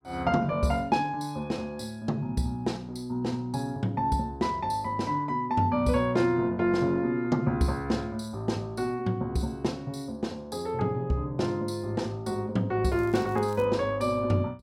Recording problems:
crackling; at 13 s; loose cable, SNR 26 dB

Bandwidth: 16 kHz